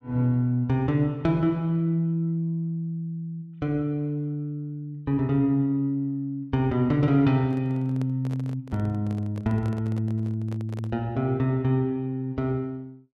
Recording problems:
handling noise; from 7.5 to 11 s; peak -11 dB vs average level

